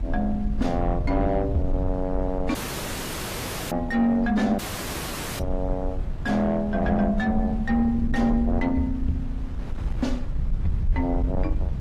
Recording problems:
codec artefacts; AAC, log-spectral distance 3 dB, nothing above 14.3 kHz
distortion; soft clipping, signal-to-distortion ratio 11 dB
rumble; below 74 Hz, SNR 5 dB
wind noise; below 280 Hz, SNR 16 dB
dropout; at 2.5 s for 1 s and at 4.5 s for 1 s

